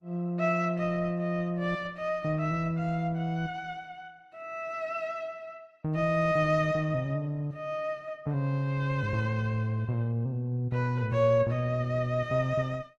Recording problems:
codec artefacts; Opus, log-spectral distance 2 dB

